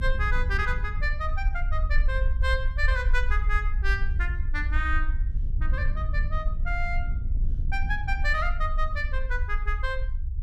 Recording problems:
rumble; below 54 Hz, strongest tone 24 Hz, SNR -1 dB
wind on the microphone; below 98 Hz, SNR 6 dB

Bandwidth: 14.5 kHz